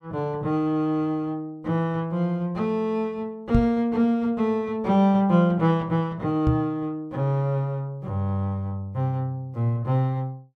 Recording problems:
microphone bump; at 3.5 s and at 6.5 s; peak +6 dB vs average level

